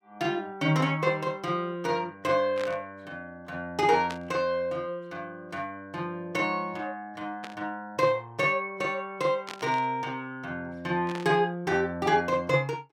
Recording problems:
static burst; 5 times, first at 2.5 s; peak -6 dB vs average level

